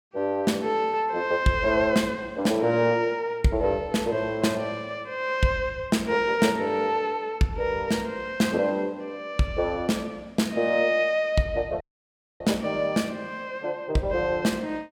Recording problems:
dropout; at 12 s for 0.5 s

